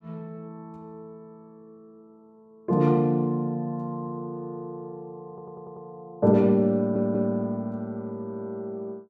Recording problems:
stutter; at 5.5 s and at 7 s

